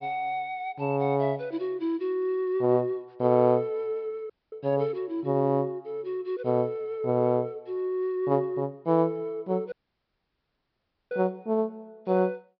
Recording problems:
low-pass filter; nothing above 5.5 kHz
audio cutting out; at 4.5 s and at 9.5 s for 1.5 s

